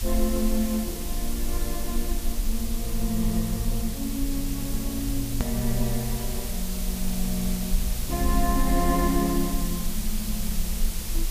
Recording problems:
hiss; SNR 5 dB
low-frequency rumble; below 46 Hz, strongest tone 22 Hz, SNR 3 dB
edit click; at 5.5 s

